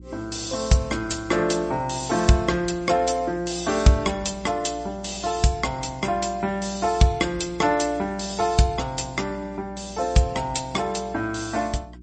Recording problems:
lossy compression; MP3, log-spectral distance 6 dB, nothing above 8.2 kHz
hum; 60 Hz, harmonics up to 360 Hz, SNR 20 dB

